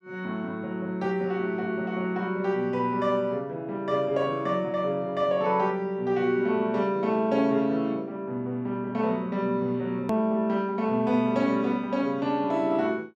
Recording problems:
click at an edit; at 10 s

